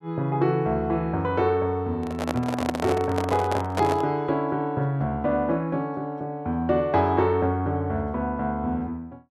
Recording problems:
handling noise; from 2 to 4 s; peak +2 dB vs average level

